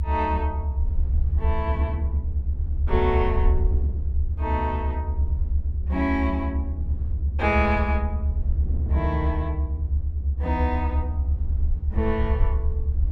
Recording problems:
low-frequency rumble; below 76 Hz, SNR -2 dB
wind on the microphone; below 220 Hz, SNR 14 dB

